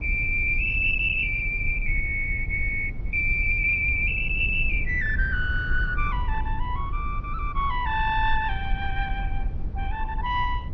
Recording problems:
lossy codec; MP2, log-spectral distance 3 dB, nothing above 6 kHz
rumble; below 66 Hz, SNR 7 dB

